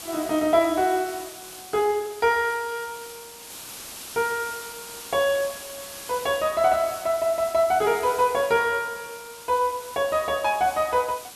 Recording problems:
hiss; slope 0 dB per octave, SNR 14 dB

